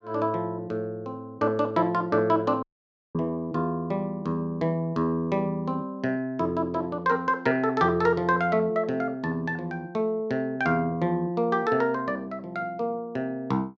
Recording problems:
audio cutting out; at 2.5 s for 0.5 s

